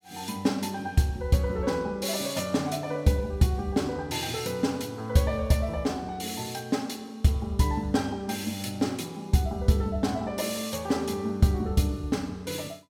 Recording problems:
none

